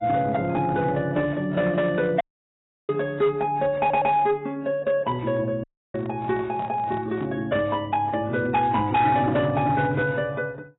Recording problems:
codec artefacts; AAC, log-spectral distance 2 dB, nothing above 3.6 kHz
distorted audio; hard clipping, signal-to-distortion ratio 11 dB
audio cutting out; at 2 s for 0.5 s and at 5.5 s
audio stuttering; at 4 s
handling noise; from 6 to 7.5 s; peak -11 dB vs average level

